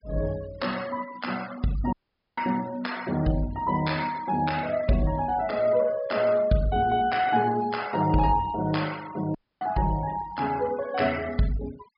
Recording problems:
treble cut off; nothing above 5.5 kHz
noise reduction artefacts; signal-to-artefact ratio 19 dB
dropout; at 2 s and at 9.5 s

